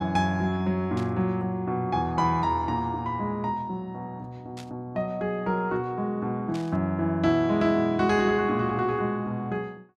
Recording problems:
burst of static; at 1 s, at 4.5 s and at 6.5 s; peak -12 dB vs average level

